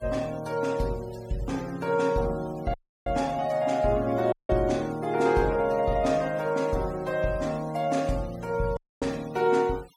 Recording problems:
noise reduction artefacts; signal-to-artefact ratio 22 dB
dropout; at 2.5 s, at 4.5 s and at 9 s

